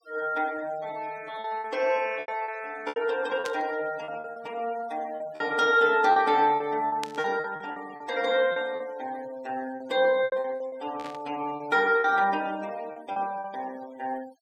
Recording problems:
noise reduction artefacts; signal-to-artefact ratio 21 dB
lost packets; 10% of the sound replaced, filled with repeated pitch periods
burst of static; at 3.5 s, at 7 s and at 11 s; peak -3 dB vs average level

